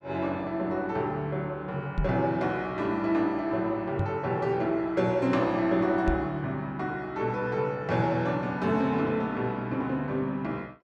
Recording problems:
microphone thump; at 2 s, at 4 s and at 6 s; peak +3 dB vs average level

